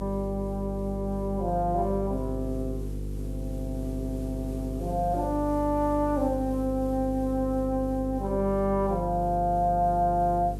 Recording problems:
hum; 50 Hz, harmonics up to 500 Hz, SNR 7 dB
background hiss; slope -3 dB per octave, SNR 27 dB

